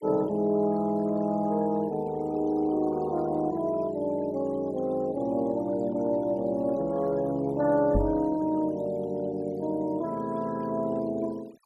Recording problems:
denoising artefacts; signal-to-artefact ratio 24 dB
microphone bump; at 8 s; peak +3 dB vs average level

